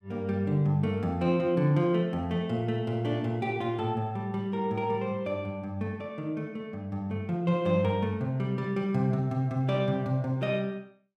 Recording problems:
none

